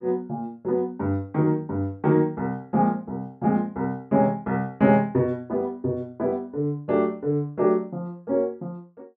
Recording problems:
none

